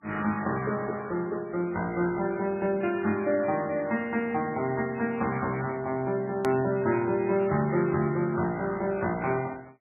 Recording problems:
codec artefacts; MP3, log-spectral distance 3 dB, nothing above 13.1 kHz
hard cut with a click; at 6.5 s

